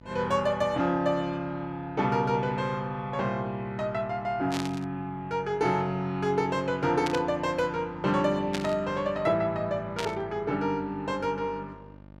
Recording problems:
hum; 50 Hz, harmonics up to 1.8 kHz, SNR 21 dB
static burst; 4 times, first at 4.5 s; peak 0 dB vs average level

